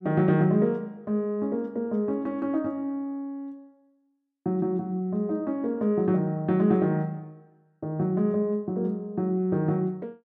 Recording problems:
none

